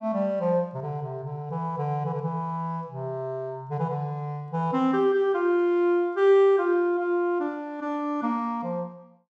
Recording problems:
treble cut off; nothing above 7.9 kHz

